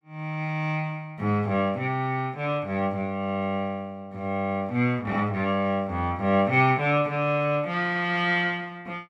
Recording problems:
none

